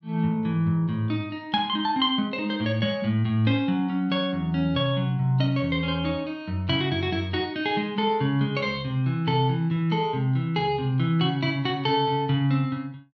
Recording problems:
treble cut off; nothing above 7.9 kHz

